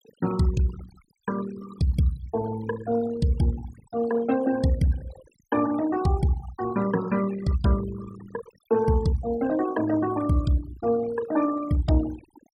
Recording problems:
denoising artefacts; signal-to-artefact ratio 15 dB

